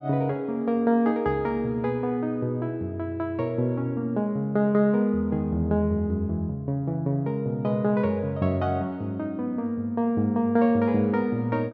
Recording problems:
none

